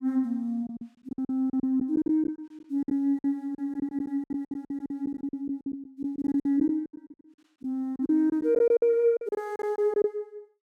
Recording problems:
packet loss; 17% of the sound replaced, filled with silence

